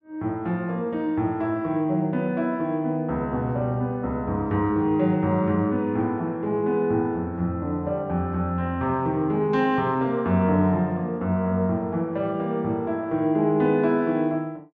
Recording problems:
none

